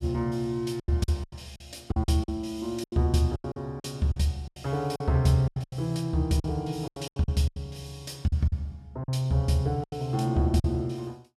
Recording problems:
packet loss; 13% of the sound replaced, filled with silence

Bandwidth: 14.5 kHz